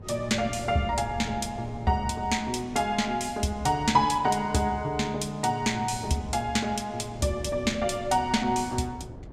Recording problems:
wind noise; below 290 Hz, SNR 16 dB

